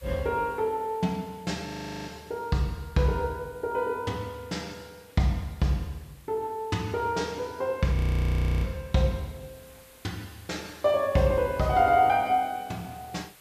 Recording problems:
hiss; slope -1 dB per octave, SNR 26 dB
frozen audio; at 1.5 s and at 8 s for 0.5 s

